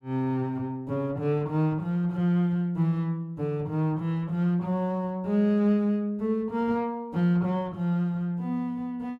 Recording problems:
none

